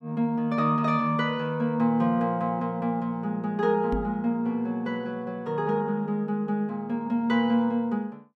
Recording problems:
microphone bump; at 4 s; peak -1 dB vs average level

